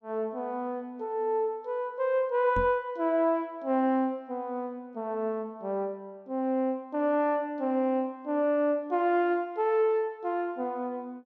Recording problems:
microphone bump; at 2.5 s; peak -2 dB vs average level

